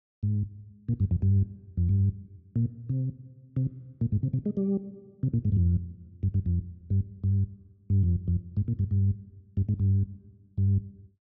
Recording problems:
none

